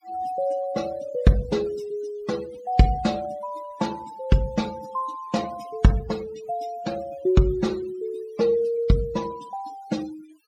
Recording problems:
noise reduction artefacts; signal-to-artefact ratio 19 dB

